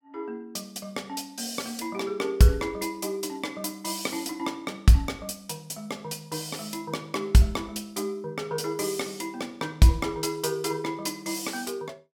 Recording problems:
none

